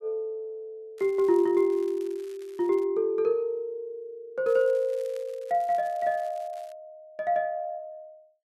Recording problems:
crackle; from 1 to 3 s and from 4.5 to 6.5 s; loose cable, SNR 28 dB

